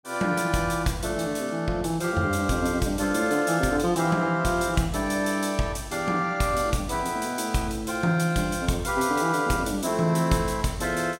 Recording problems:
none

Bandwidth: 16 kHz